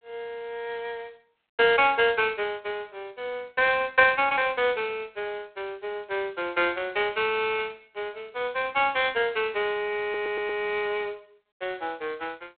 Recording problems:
telephone audio; 300 Hz to 3.6 kHz, G.726
stutter; at 10 s

